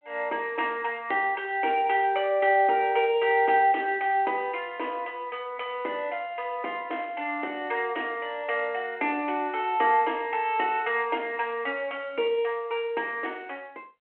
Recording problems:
phone line; 300 Hz to 3.2 kHz, G.726

